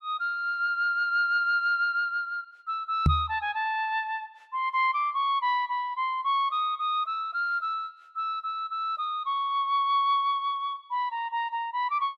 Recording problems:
microphone thump; at 3 s; peak +8 dB vs average level

